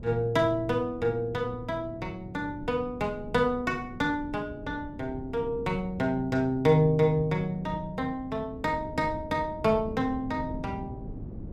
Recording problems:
wind on the microphone; below 230 Hz, SNR 14 dB

